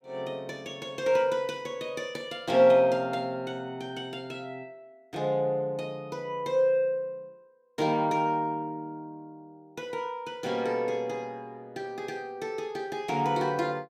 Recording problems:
none

